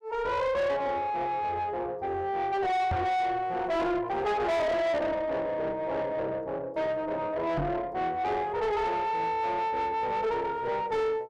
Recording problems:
distortion; soft clipping, signal-to-distortion ratio 6 dB
microphone thump; at 3 s and at 7.5 s; peak +3 dB vs average level

